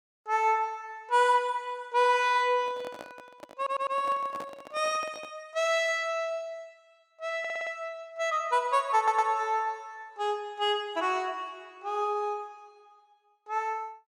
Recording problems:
microphone handling noise; from 2.5 to 5.5 s; peak -9 dB vs average level
audio stuttering; at 3.5 s, at 7.5 s and at 9 s

